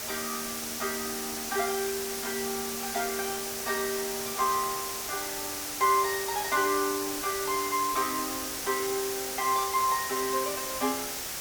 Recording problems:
hiss; slope 0 dB per octave, SNR 2 dB

